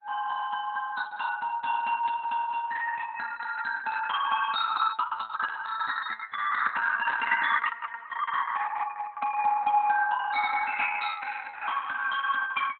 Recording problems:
codec artefacts; Opus, log-spectral distance 5 dB, nothing above 3.9 kHz
static burst; 4 times, first at 2 s; peak -11 dB vs average level

